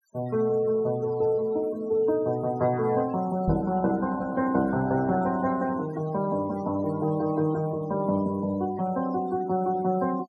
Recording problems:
noise reduction artefacts; signal-to-artefact ratio 20 dB
microphone bump; at 3.5 s; peak +4 dB vs average level

